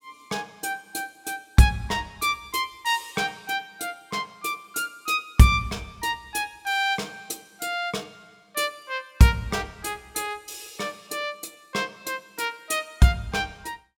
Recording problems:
none

